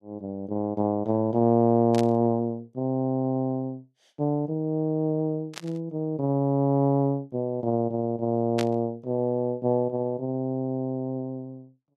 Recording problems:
static burst; at 2 s, at 5.5 s and at 8.5 s; peak -3 dB vs average level

